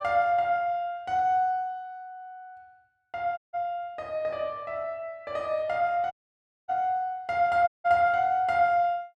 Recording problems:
dropout; at 3.5 s, at 6 s for 0.5 s and at 7.5 s

